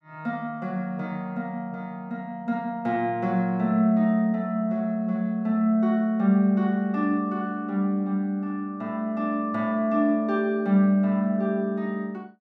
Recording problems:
none

